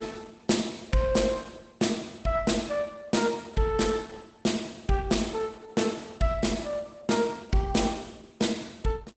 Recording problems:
lossy compression; Opus, log-spectral distance 5 dB, nothing above 8 kHz

